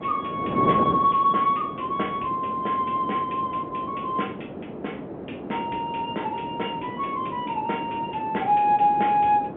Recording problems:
telephone audio; 260 Hz to 3.3 kHz, G.711
wind noise; below 550 Hz, SNR 9 dB

